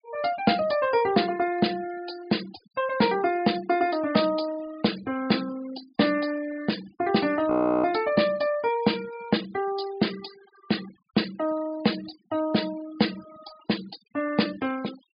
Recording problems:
treble cut off; nothing above 5 kHz
denoising artefacts; signal-to-artefact ratio 18 dB
frozen audio; at 7.5 s

